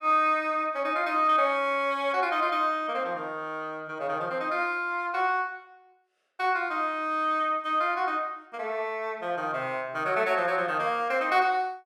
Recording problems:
none

